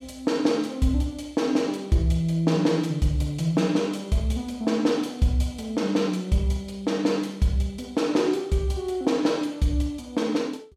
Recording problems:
none

